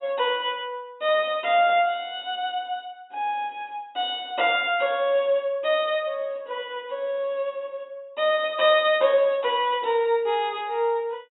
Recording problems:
low-pass filter; nothing above 4 kHz

